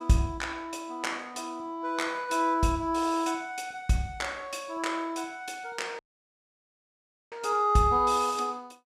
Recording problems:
dropout; at 6 s for 1.5 s

